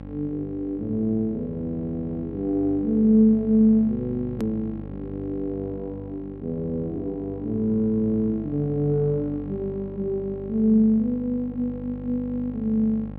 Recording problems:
mains hum; 50 Hz, harmonics up to 1.1 kHz, SNR 14 dB
edit click; at 4.5 s

